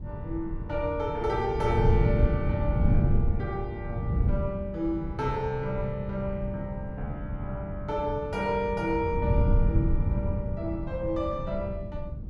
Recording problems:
wind on the microphone; below 130 Hz, SNR -1 dB

